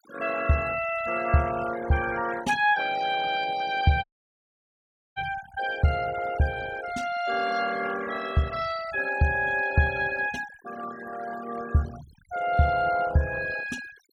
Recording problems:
denoising artefacts; signal-to-artefact ratio 16 dB
dropout; at 4 s for 1 s

